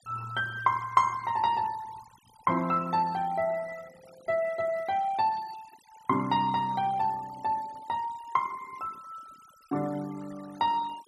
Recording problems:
noise reduction artefacts; signal-to-artefact ratio 22 dB

